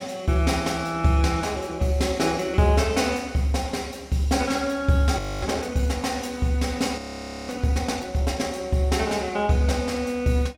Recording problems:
audio freezing; at 5 s and at 7 s for 0.5 s

